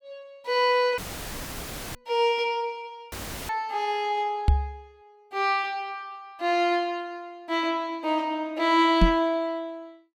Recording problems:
audio cutting out; at 1 s for 1 s and at 3 s; filled with static
microphone thump; at 2 s, at 4.5 s and at 9 s; peak +8 dB vs average level

